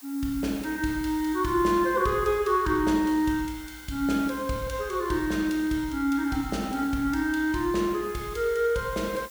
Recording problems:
hiss; slope +1 dB per octave, SNR 19 dB

